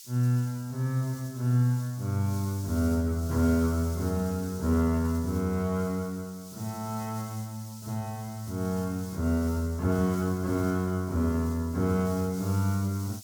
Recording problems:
hiss; SNR 17 dB

